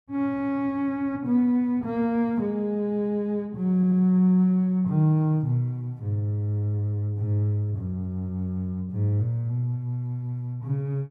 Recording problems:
stutter; at 4 s

